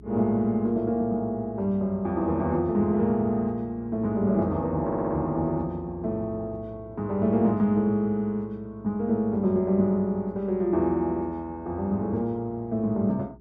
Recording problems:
hum; 60 Hz, harmonics up to 420 Hz, SNR 23 dB
stutter; at 5 s

